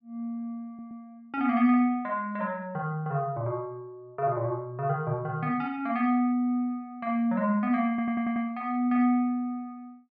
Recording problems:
stutter; at 0.5 s and at 8 s

